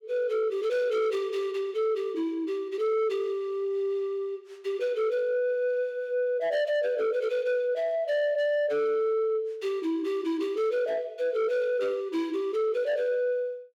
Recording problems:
distortion; soft clipping, signal-to-distortion ratio 10 dB

